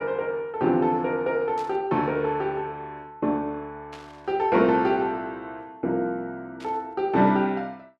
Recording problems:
burst of static; at 1.5 s, at 4 s and at 6.5 s; peak -15 dB vs average level

